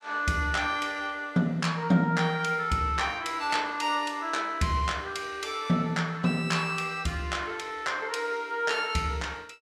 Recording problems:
none

